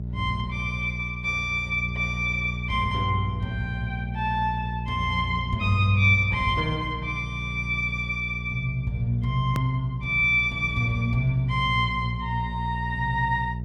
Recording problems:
electrical hum; 60 Hz, harmonics up to 420 Hz, SNR 7 dB
click at an edit; at 9.5 s

